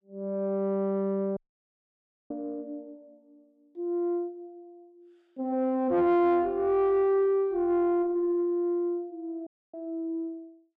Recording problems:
distortion; soft clipping, signal-to-distortion ratio 10 dB
dropout; at 1.5 s for 1 s and at 9.5 s

